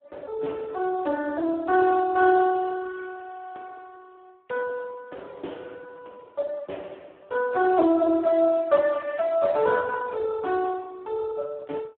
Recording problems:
telephone audio; 220 Hz to 2 kHz, Speex

